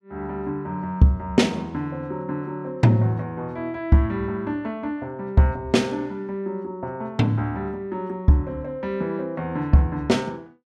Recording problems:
none

